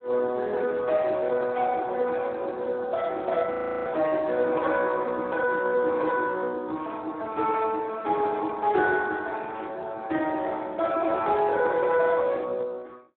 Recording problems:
phone line; 260 Hz to 3.7 kHz, Speex
frozen audio; at 3.5 s

